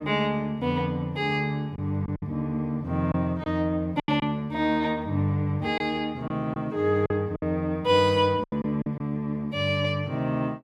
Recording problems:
lost packets; 5% of the sound replaced, filled with silence

